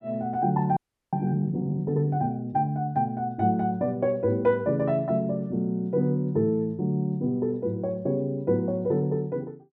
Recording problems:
frozen audio; at 1 s

